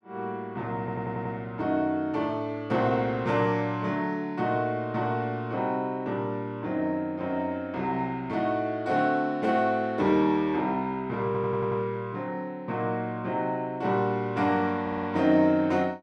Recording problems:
stutter; at 1 s, at 11 s and at 15 s

